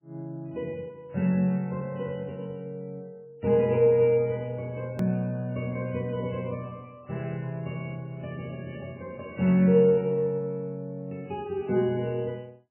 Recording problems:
codec artefacts; MP3, log-spectral distance 2 dB, nothing above 2.7 kHz
click at an edit; at 5 s

